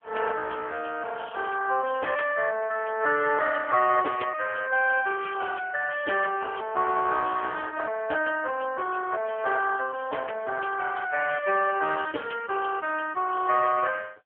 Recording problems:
phone line; 320 Hz to 3 kHz, AMR-NB

